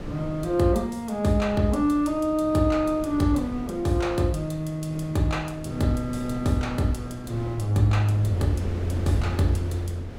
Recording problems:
wind noise; below 360 Hz, SNR 13 dB

